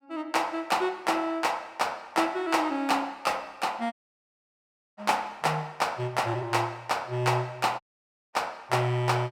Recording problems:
dropout; at 4 s for 1 s and at 8 s for 0.5 s

